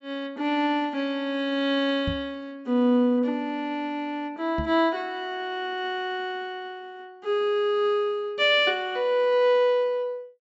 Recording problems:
treble cut off; nothing above 8 kHz
microphone thump; at 2 s and at 4.5 s; peak -1 dB vs average level

